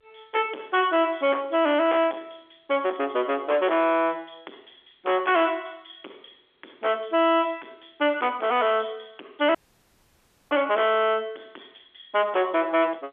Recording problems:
phone line; 260 Hz to 3.5 kHz, G.711
distorted audio; soft clipping, signal-to-distortion ratio 7 dB
dropout; at 9.5 s for 1 s

